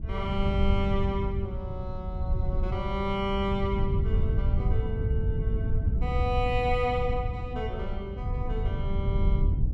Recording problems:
wind on the microphone; below 100 Hz, SNR -2 dB

